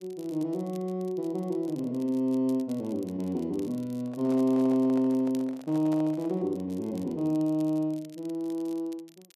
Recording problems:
crackling; vinyl, SNR 27 dB
handling noise; from 4 to 6.5 s; peak -11 dB vs average level

